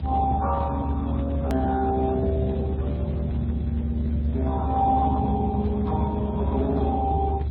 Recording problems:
lossy compression; Speex, then MP3, log-spectral distance 2 dB, nothing above 17.1 kHz
rumble; below 130 Hz, strongest tone 72 Hz, SNR 1 dB
click at an edit; at 1.5 s

